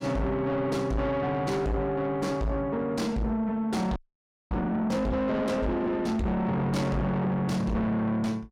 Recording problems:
distorted audio; soft clipping, signal-to-distortion ratio 8 dB
audio freezing; at 4 s for 0.5 s

